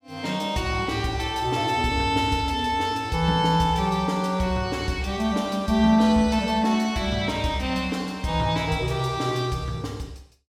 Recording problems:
none

